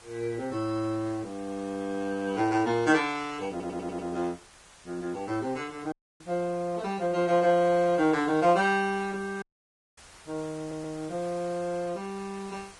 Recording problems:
codec artefacts; Vorbis, log-spectral distance 5 dB
hiss; slope -1 dB per octave, SNR 22 dB
audio stuttering; at 3.5 s and at 11 s
audio cutting out; at 6 s and at 9.5 s for 0.5 s

